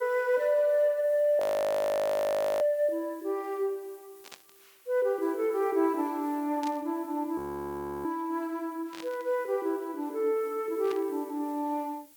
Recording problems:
background hiss; slope -1 dB per octave, SNR 25 dB
audio freezing; at 1.5 s for 1 s and at 7.5 s for 0.5 s
static burst; 4 times, first at 4 s; peak -10 dB vs average level

